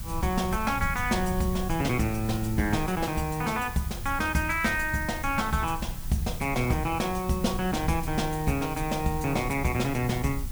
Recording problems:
hiss; slope 0 dB per octave, SNR 14 dB
low-frequency rumble; below 100 Hz, SNR 10 dB

